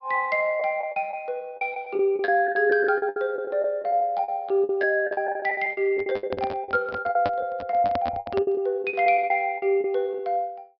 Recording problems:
treble missing; nothing above 5.5 kHz
packet loss; 16% of the sound replaced, filled with the last packet
microphone handling noise; from 6 to 8.5 s; peak 0 dB vs average level

